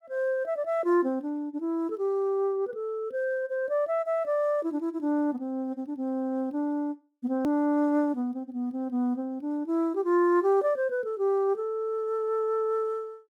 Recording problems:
edit click; at 7.5 s

